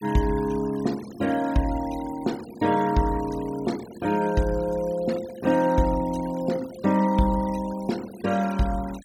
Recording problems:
denoising artefacts; signal-to-artefact ratio 19 dB

